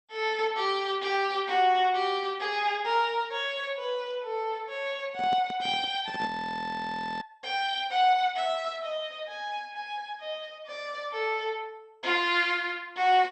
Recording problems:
lossy compression; MP2, log-spectral distance 3 dB, nothing above 7.8 kHz
microphone handling noise; from 5 to 6.5 s; peak -6 dB vs average level
audio freezing; at 6.5 s for 1 s

